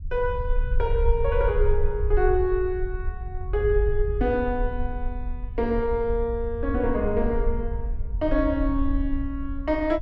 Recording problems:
low-frequency rumble; below 60 Hz, SNR 4 dB

